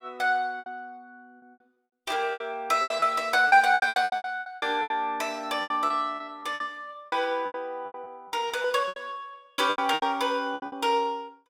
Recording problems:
lost packets; 18% of the sound replaced, filled with repeated pitch periods

